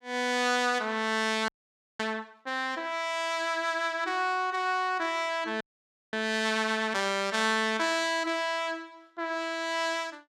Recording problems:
frozen audio; at 1.5 s for 0.5 s and at 5.5 s for 0.5 s

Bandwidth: 15 kHz